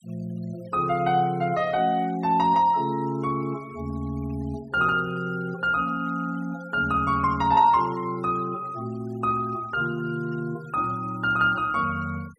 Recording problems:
noise reduction artefacts; signal-to-artefact ratio 26 dB

